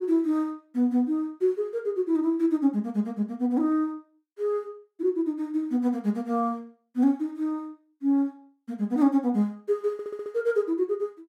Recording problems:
stutter; at 10 s

